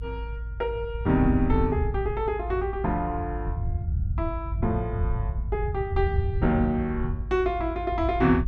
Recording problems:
low-frequency rumble; below 94 Hz, SNR 3 dB

